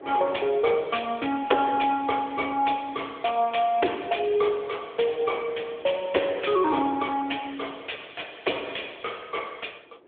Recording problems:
telephone audio; 300 Hz to 3.4 kHz, AMR-NB
wind noise; below 640 Hz, SNR 23 dB

